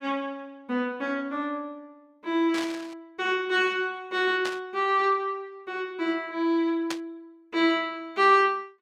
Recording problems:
static burst; at 2.5 s, at 4.5 s and at 7 s; peak -2 dB vs average level

